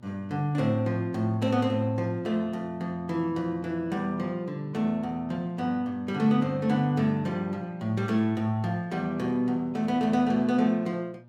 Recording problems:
hum; 60 Hz, harmonics up to 1.2 kHz, SNR 25 dB

